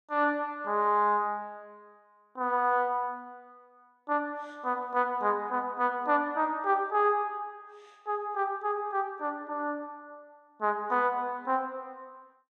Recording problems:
none

